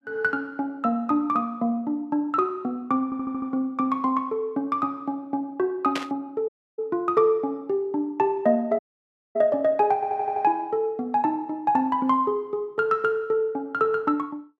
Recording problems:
audio stuttering; at 3 s and at 10 s
static burst; at 6 s; peak 0 dB vs average level
audio cutting out; at 6.5 s and at 9 s for 0.5 s

